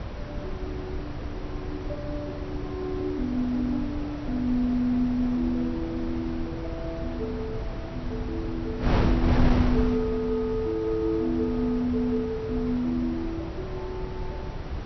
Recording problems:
low-pass filter; nothing above 5.9 kHz
hiss; slope -3 dB per octave, SNR 24 dB
wind noise; below 280 Hz, SNR 4 dB

